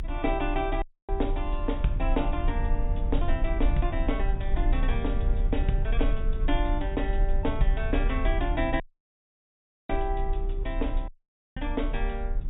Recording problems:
treble missing; nothing above 4 kHz
rumble; below 48 Hz, strongest tone 32 Hz, SNR -1 dB
dropout; at 1 s, at 9 s for 1 s and at 11 s

